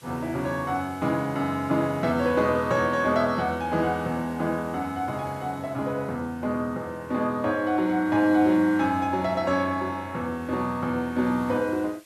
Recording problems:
hiss; slope +1 dB per octave, SNR 27 dB

